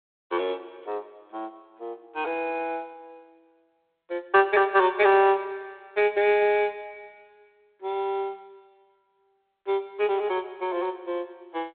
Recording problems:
phone line; 300 Hz to 3.7 kHz, G.726

